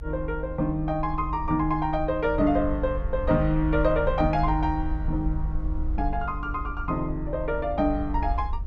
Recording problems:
low-frequency rumble; below 70 Hz, SNR 6 dB

